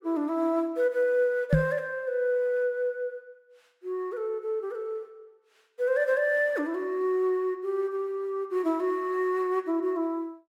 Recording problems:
microphone bump; at 1.5 s; peak +9 dB vs average level

